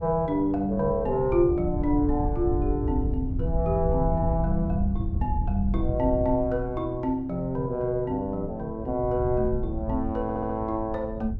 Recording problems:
wind on the microphone; below 98 Hz, SNR 5 dB
audio stuttering; at 10 s

